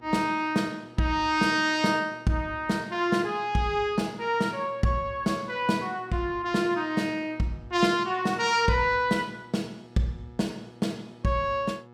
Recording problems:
hum; 60 Hz, harmonics up to 2.2 kHz, SNR 24 dB

